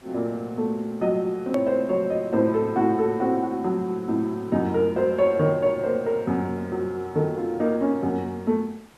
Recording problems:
background hiss; slope -4 dB per octave, SNR 28 dB
edit click; at 1.5 s

